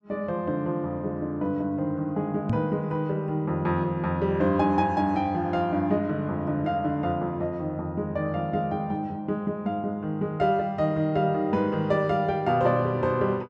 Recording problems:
knock on the microphone; at 2.5 s; peak +3 dB vs average level

